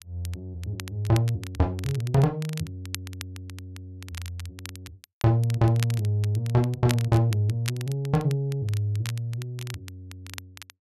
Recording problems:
crackling; vinyl, SNR 16 dB

